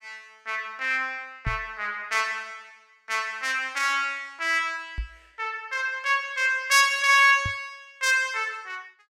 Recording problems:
microphone bump; at 1.5 s, at 5 s and at 7.5 s; peak -2 dB vs average level

